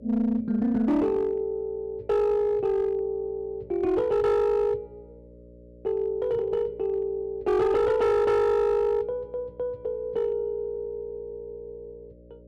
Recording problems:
distorted audio; hard clipping, uneven, signal-to-distortion ratio 11 dB
hum; 60 Hz, harmonics up to 600 Hz, SNR 24 dB

